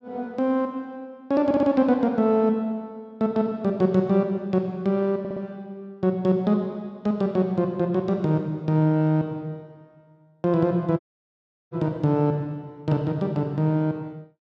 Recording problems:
audio stuttering; at 1.5 s and at 5 s
audio cutting out; at 11 s for 0.5 s

